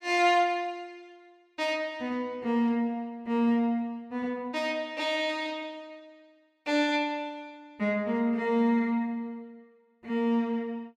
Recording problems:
none

